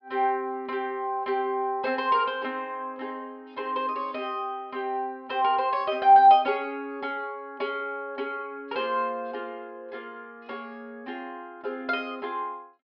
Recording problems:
low-pass filter; nothing above 5.5 kHz

